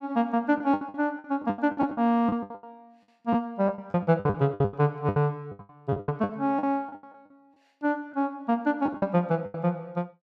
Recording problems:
lost packets; 19% of the sound replaced, filled with the last packet

